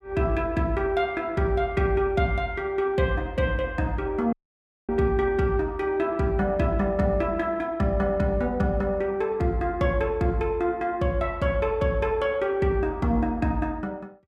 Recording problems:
audio cutting out; at 4.5 s for 0.5 s

